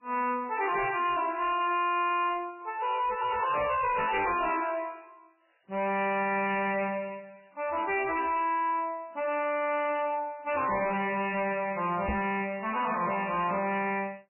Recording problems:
lossy compression; MP3, log-spectral distance 5 dB, nothing above 2.4 kHz
distortion; soft clipping, signal-to-distortion ratio 6 dB
microphone bump; at 12 s; peak +1 dB vs average level

